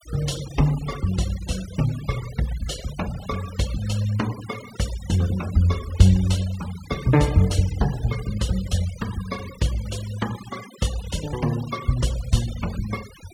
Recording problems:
denoising artefacts; signal-to-artefact ratio 15 dB

